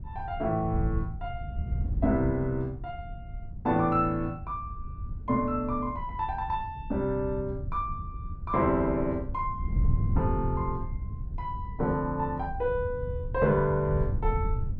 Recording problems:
wind noise; below 100 Hz, SNR 6 dB

